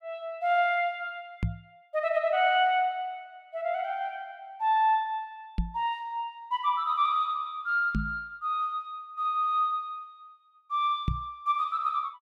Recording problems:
microphone bump; 4 times, first at 1.5 s; peak +3 dB vs average level

